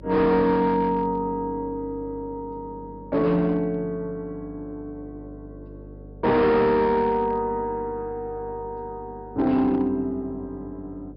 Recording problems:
treble cut off; nothing above 5.5 kHz
distortion; hard clipping, signal-to-distortion ratio 10 dB
mains hum; 50 Hz, harmonics up to 600 Hz, SNR 19 dB

